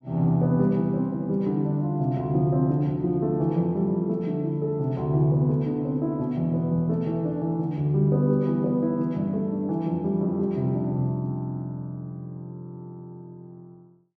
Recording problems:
none

